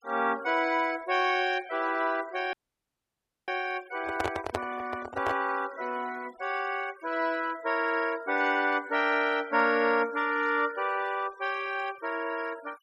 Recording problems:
denoising artefacts; signal-to-artefact ratio 20 dB
audio cutting out; at 2.5 s for 1 s
handling noise; from 4 to 5.5 s; peak +2 dB vs average level

